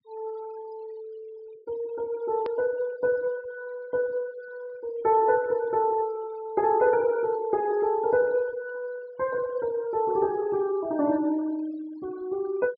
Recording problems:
treble cut off; nothing above 5.1 kHz
noise reduction artefacts; signal-to-artefact ratio 23 dB
edit click; at 2.5 s

